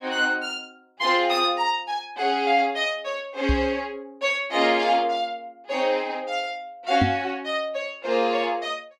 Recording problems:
knock on the microphone; at 3.5 s and at 7 s; peak +4 dB vs average level

